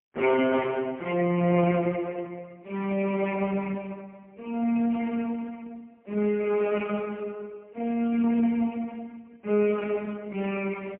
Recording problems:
phone line; 170 Hz to 3.1 kHz, AMR-NB, then MP3

